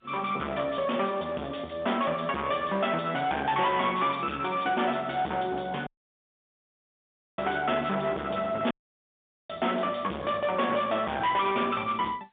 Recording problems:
phone line; 190 Hz to 3.6 kHz, G.711
distorted audio; hard clipping, uneven, signal-to-distortion ratio 6 dB
audio cutting out; at 6 s for 1.5 s and at 8.5 s for 1 s

